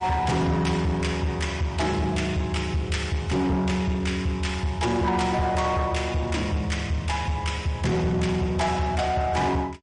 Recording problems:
lossy codec; MP3, log-spectral distance 2 dB, nothing above 9.5 kHz
distorted audio; soft clipping, signal-to-distortion ratio 11 dB

